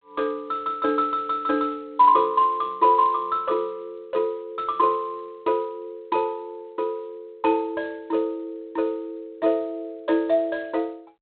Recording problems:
phone line; 220 Hz to 3.6 kHz, G.726

